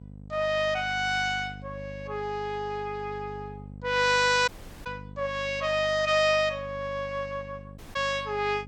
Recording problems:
lossy compression; MP2, log-spectral distance 3 dB, nothing above 7.3 kHz
hum; 50 Hz, harmonics up to 550 Hz, SNR 17 dB
dropout; at 4.5 s and at 8 s

